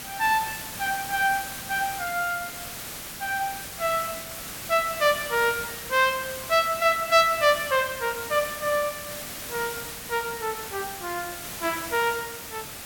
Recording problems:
hiss; slope -1 dB per octave, SNR 9 dB

